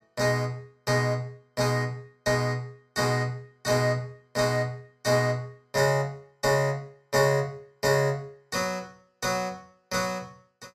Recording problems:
none

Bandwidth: 14.5 kHz